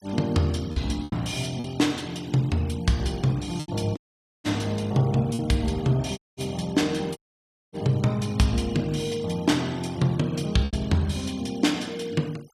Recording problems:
denoising artefacts; signal-to-artefact ratio 22 dB
packet loss; 3% of the sound replaced, filled with repeated pitch periods
audio cutting out; at 4 s, at 6 s and at 7 s for 0.5 s

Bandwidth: 15 kHz